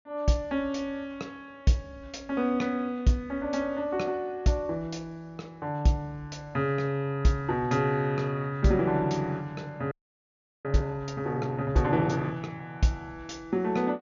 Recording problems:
low-pass filter; nothing above 7 kHz
frozen audio; at 10 s for 0.5 s

